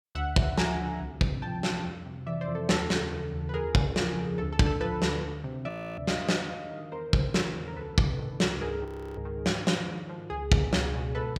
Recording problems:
frozen audio; at 5.5 s and at 9 s

